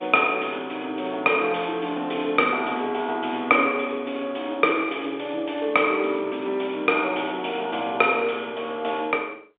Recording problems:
phone line; 260 Hz to 3.6 kHz, G.711

